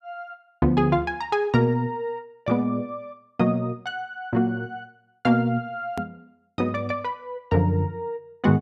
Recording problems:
edit click; at 6 s

